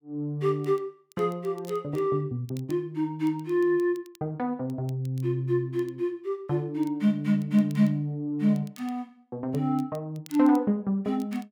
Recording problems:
crackle; vinyl, SNR 28 dB

